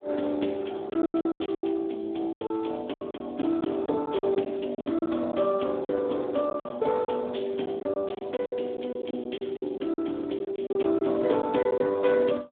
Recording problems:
phone line; 220 Hz to 3.5 kHz, Speex
packet loss; 13% of the sound replaced, filled with silence

